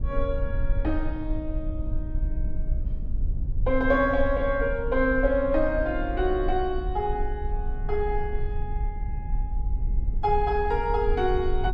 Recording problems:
rumble; below 56 Hz, SNR 5 dB

